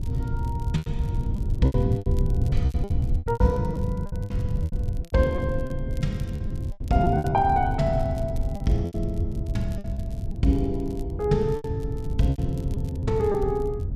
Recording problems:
wind on the microphone; below 120 Hz, SNR 2 dB
crackle; vinyl, SNR 28 dB
packet loss; 13% of the sound replaced, filled with repeated pitch periods

